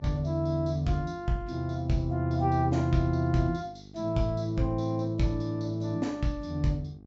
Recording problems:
treble cut off; nothing above 8 kHz
hum; 50 Hz, harmonics up to 800 Hz, SNR 21 dB

